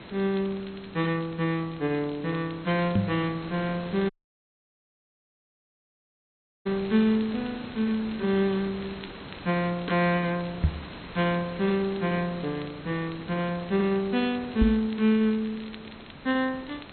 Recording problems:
treble cut off; nothing above 4.2 kHz
hiss; SNR 14 dB
crackle; vinyl, SNR 24 dB
microphone thump; at 3 s, at 11 s and at 15 s; peak +8 dB vs average level
audio cutting out; at 4 s for 2.5 s

